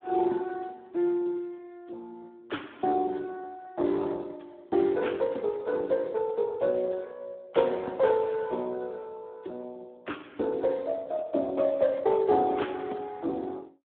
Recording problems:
telephone audio; 220 Hz to 3.8 kHz, Speex

